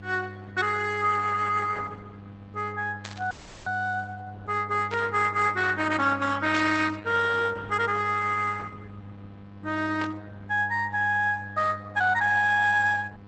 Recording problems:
lossy compression; Opus, log-spectral distance 4 dB, nothing above 12 kHz
mains hum; 50 Hz, harmonics up to 1.5 kHz, SNR 20 dB
static burst; 4 times, first at 3 s; peak -8 dB vs average level
dropout; at 3.5 s

